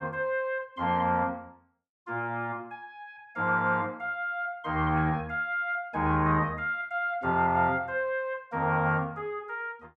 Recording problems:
none

